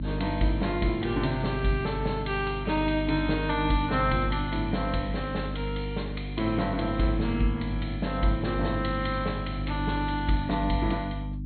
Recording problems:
treble cut off; nothing above 4.3 kHz
electrical hum; 50 Hz, harmonics up to 300 Hz, SNR 4 dB

